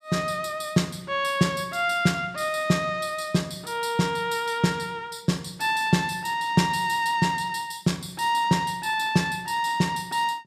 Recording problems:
none

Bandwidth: 15 kHz